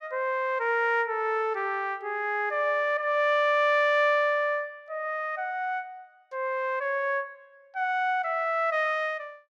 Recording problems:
none

